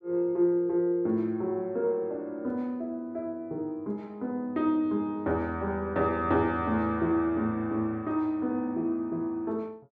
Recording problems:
none

